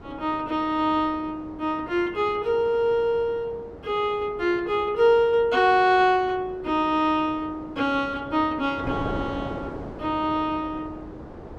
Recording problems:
wind noise; below 630 Hz, SNR 15 dB

